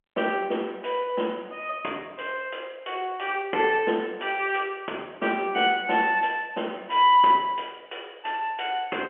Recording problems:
phone line; 260 Hz to 3.3 kHz, G.711

